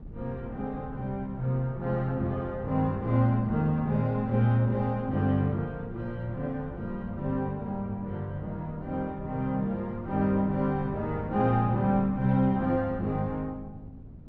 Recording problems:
wind noise; below 180 Hz, SNR 15 dB

